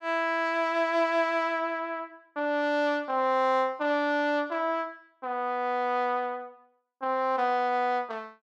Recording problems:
none

